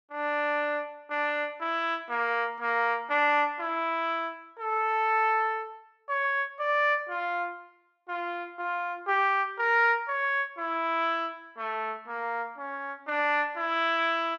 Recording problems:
none

